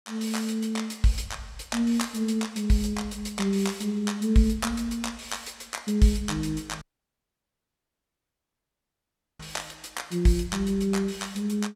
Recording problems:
dropout; at 7 s for 2.5 s

